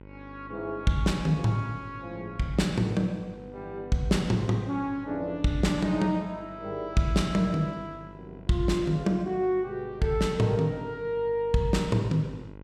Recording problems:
hum; 50 Hz, harmonics up to 1.5 kHz, SNR 20 dB

